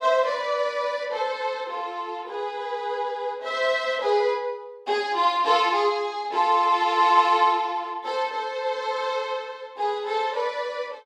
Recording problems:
none

